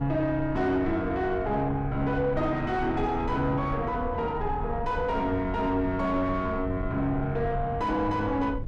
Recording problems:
distorted audio; soft clipping, signal-to-distortion ratio 8 dB
low-frequency rumble; below 110 Hz, SNR 9 dB

